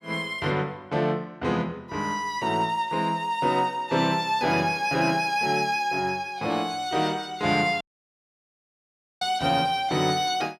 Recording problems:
audio cutting out; at 8 s for 1.5 s

